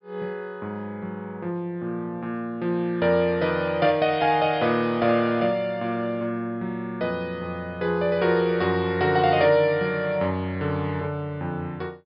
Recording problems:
low-pass filter; nothing above 5.5 kHz

